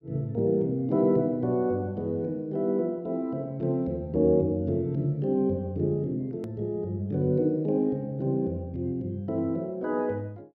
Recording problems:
edit click; at 6.5 s

